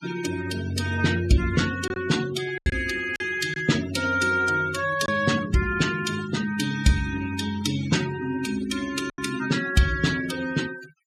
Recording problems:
denoising artefacts; signal-to-artefact ratio 12 dB
packet loss; 3% of the sound replaced, filled with silence

